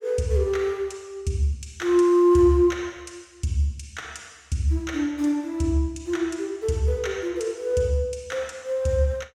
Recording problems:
none

